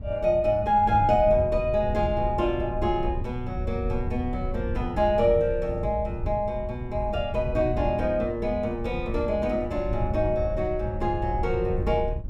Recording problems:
wind noise; below 100 Hz, SNR 8 dB

